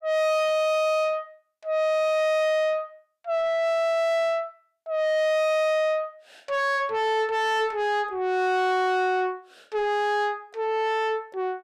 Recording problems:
distorted audio; soft clipping, signal-to-distortion ratio 6 dB

